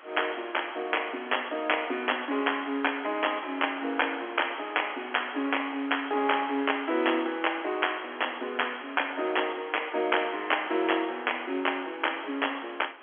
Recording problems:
phone line; 240 Hz to 3.4 kHz, G.711
hiss; SNR 19 dB

